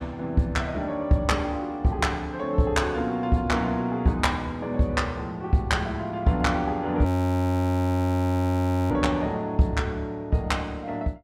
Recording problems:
audio freezing; at 7 s for 2 s

